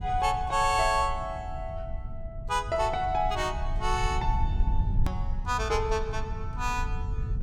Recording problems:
rumble; below 80 Hz, SNR 5 dB
edit click; at 5 s

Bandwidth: 17 kHz